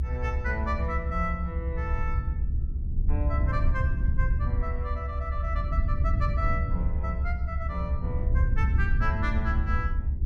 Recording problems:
low-frequency rumble; below 76 Hz, SNR -5 dB

